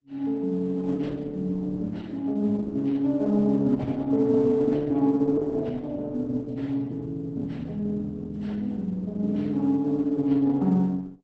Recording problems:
lossy compression; Opus, log-spectral distance 2 dB, nothing above 7.8 kHz

